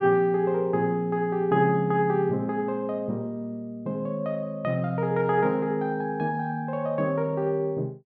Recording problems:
none

